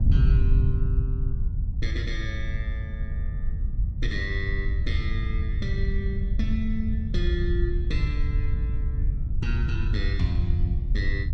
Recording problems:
wind noise; below 82 Hz, SNR -6 dB

